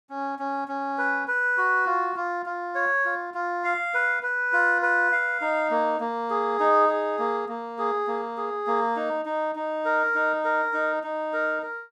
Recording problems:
none

